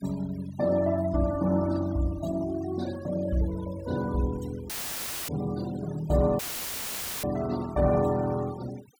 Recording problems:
noise reduction artefacts; signal-to-artefact ratio 18 dB
audio cutting out; at 4.5 s for 0.5 s and at 6.5 s for 1 s; filled with static

